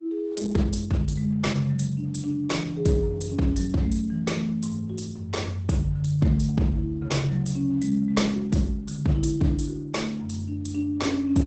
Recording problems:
lossy codec; Opus, log-spectral distance 3 dB, nothing above 8 kHz

